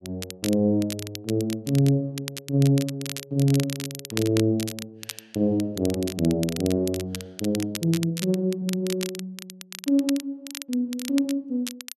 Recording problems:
crackling; vinyl, SNR 11 dB

